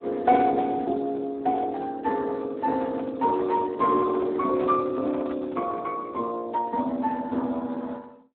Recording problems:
phone line; 220 Hz to 3.8 kHz, Speex
handling noise; from 2.5 to 6 s; peak -7 dB vs average level

